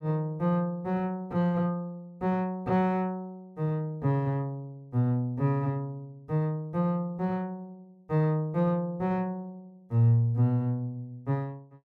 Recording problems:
none

